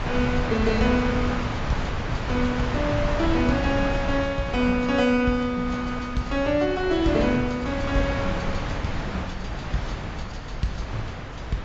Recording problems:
codec artefacts; AAC, log-spectral distance 3 dB, nothing above 7.3 kHz
wind on the microphone; below 900 Hz, SNR 4 dB

